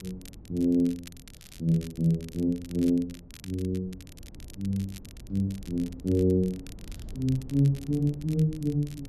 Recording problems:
wind on the microphone; below 170 Hz, SNR 19 dB
crackle; vinyl, SNR 22 dB

